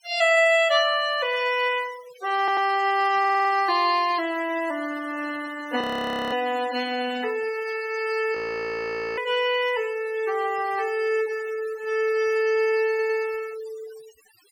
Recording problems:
noise reduction artefacts; signal-to-artefact ratio 17 dB
audio stuttering; at 2.5 s, at 3 s and at 13 s
frozen audio; at 6 s for 0.5 s and at 8.5 s for 1 s

